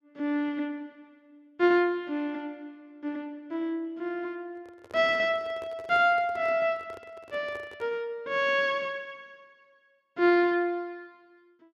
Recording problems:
handling noise; from 4.5 to 8 s; peak -11 dB vs average level

